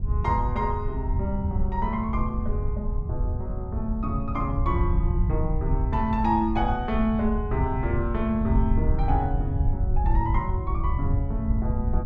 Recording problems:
rumble; below 92 Hz, SNR -1 dB

